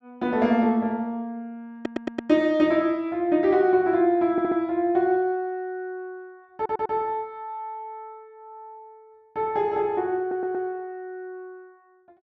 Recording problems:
stutter; 4 times, first at 2 s

